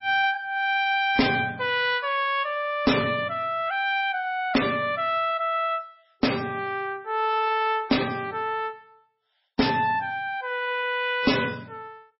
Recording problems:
lossy compression; MP3, log-spectral distance 3 dB, nothing above 5.5 kHz
distortion; soft clipping, signal-to-distortion ratio 7 dB

